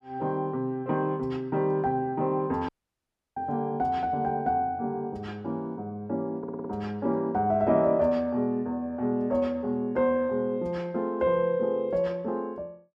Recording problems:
audio cutting out; at 2.5 s for 0.5 s
audio stuttering; at 6.5 s

